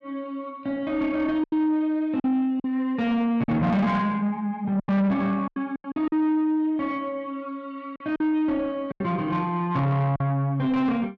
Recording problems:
distorted audio; soft clipping, signal-to-distortion ratio 10 dB
packet loss; 6% of the sound replaced, filled with silence

